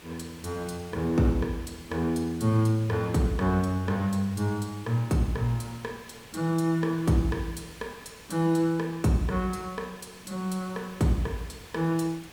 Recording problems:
background hiss; slope -2 dB per octave, SNR 20 dB

